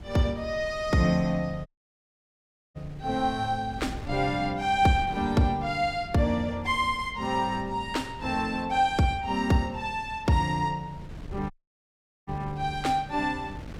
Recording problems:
wind noise; below 180 Hz, SNR 17 dB
audio cutting out; at 1.5 s for 1 s and at 12 s for 1 s

